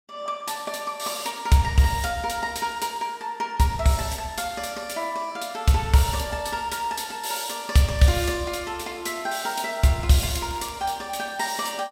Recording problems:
crackling; at 8 s and at 10 s; loose cable, SNR 23 dB

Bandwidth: 16.5 kHz